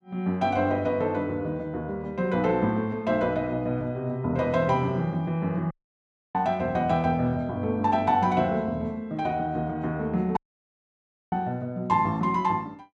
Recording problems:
audio cutting out; at 5.5 s for 0.5 s and at 10 s for 1 s

